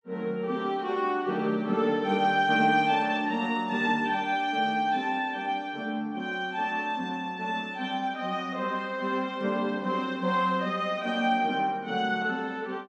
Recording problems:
none

